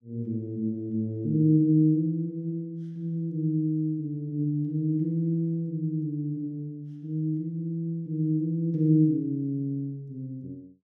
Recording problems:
none

